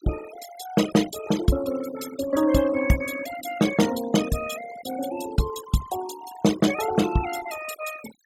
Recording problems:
denoising artefacts; signal-to-artefact ratio 11 dB

